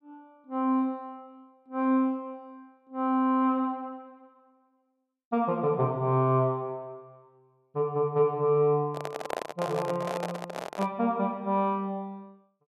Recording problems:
microphone handling noise; from 9 to 11 s; peak 0 dB vs average level

